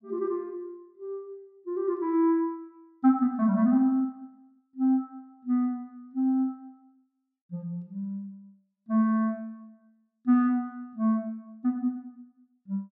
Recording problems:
none

